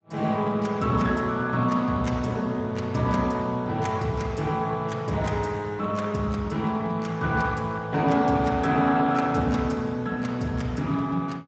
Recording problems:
lossy codec; Speex, log-spectral distance 3 dB, nothing above 7.3 kHz

